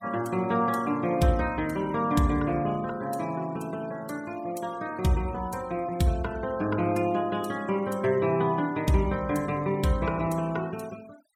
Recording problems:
denoising artefacts; signal-to-artefact ratio 21 dB

